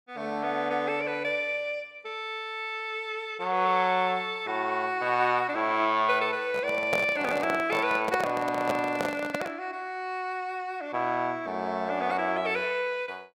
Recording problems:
microphone handling noise; from 6.5 to 9.5 s; peak +3 dB vs average level

